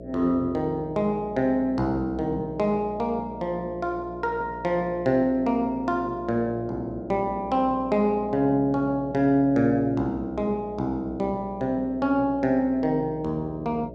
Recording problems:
electrical hum; 60 Hz, harmonics up to 660 Hz, SNR 15 dB

